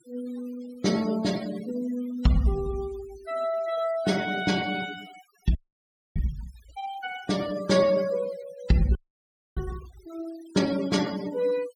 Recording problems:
denoising artefacts; signal-to-artefact ratio 14 dB
audio freezing; at 5.5 s for 0.5 s and at 9 s for 0.5 s

